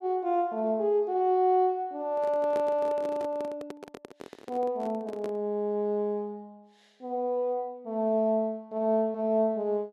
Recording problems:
microphone handling noise; from 2 to 5.5 s; peak -6 dB vs average level

